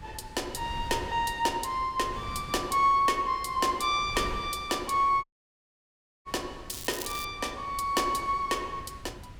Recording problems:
wind noise; below 200 Hz, SNR 16 dB
audio cutting out; at 5 s for 1 s
crackle; at 6.5 s; loose cable, SNR 10 dB

